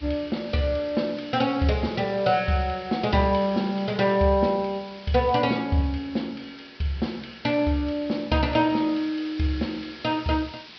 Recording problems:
low-pass filter; nothing above 5.5 kHz
background hiss; SNR 19 dB

